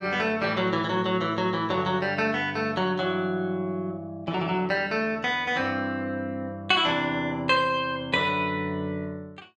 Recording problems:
none

